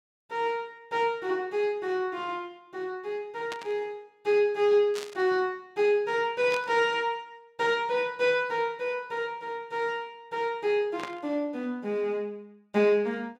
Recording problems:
static burst; 4 times, first at 3.5 s; peak -5 dB vs average level

